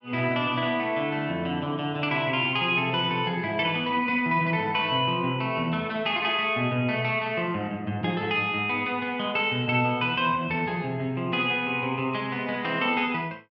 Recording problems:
none

